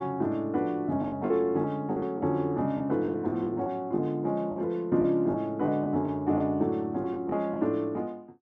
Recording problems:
lost packets; 7% of the sound replaced, filled with the last packet

